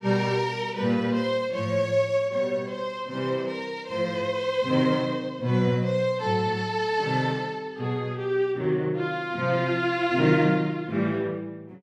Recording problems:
none

